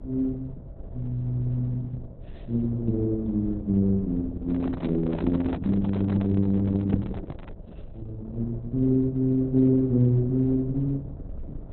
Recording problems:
lossy codec; Opus, log-spectral distance 2 dB, nothing above 3.9 kHz
hum; 60 Hz, harmonics up to 780 Hz, SNR 26 dB
low-frequency rumble; below 110 Hz, SNR 17 dB
microphone handling noise; from 4.5 to 7.5 s; peak -5 dB vs average level

